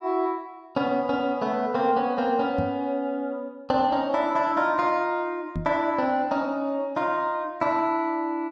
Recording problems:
knock on the microphone; at 2.5 s and at 5.5 s; peak -1 dB vs average level

